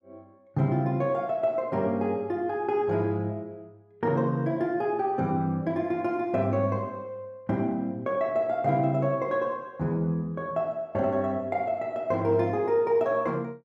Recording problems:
none

